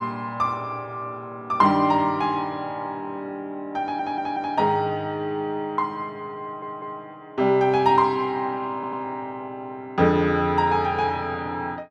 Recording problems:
stutter; at 4 s, at 6.5 s and at 8.5 s

